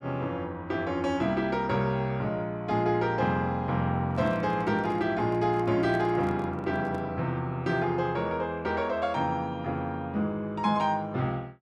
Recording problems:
microphone handling noise; from 4 to 7 s; peak -7 dB vs average level

